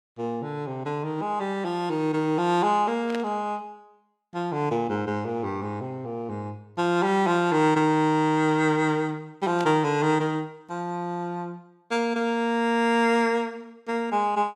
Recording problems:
static burst; at 3 s and at 9.5 s; peak -7 dB vs average level

